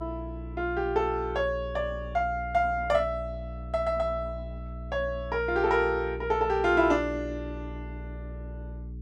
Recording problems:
hum; 60 Hz, harmonics up to 420 Hz, SNR 11 dB

